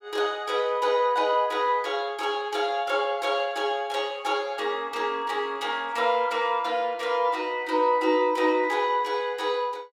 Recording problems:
none

